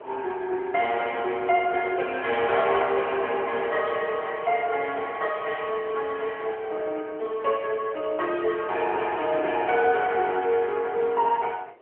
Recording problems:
phone line; 320 Hz to 3.2 kHz, AMR-NB
wind on the microphone; below 780 Hz, SNR 24 dB
crackling; from 1 to 3 s and from 9 to 11 s; loose cable, SNR 29 dB

